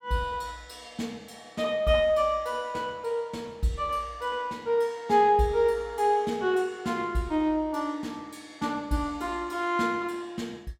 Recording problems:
none

